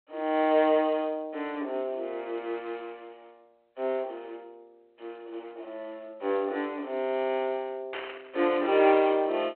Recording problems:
telephone audio; 280 Hz to 3.3 kHz, G.726
static burst; at 8 s; peak -6 dB vs average level

